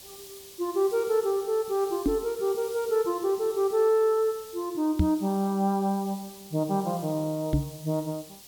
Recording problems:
background hiss; SNR 18 dB
microphone thump; at 2 s, at 5 s and at 7.5 s; peak +6 dB vs average level

